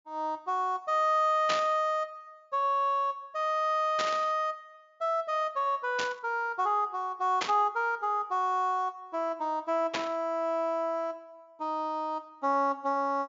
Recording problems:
treble cut off; nothing above 7.2 kHz
burst of static; 5 times, first at 1.5 s; peak +2 dB vs average level

